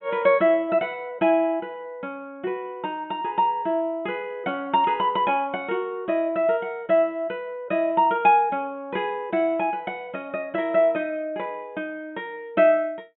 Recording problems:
treble missing; nothing above 3.6 kHz

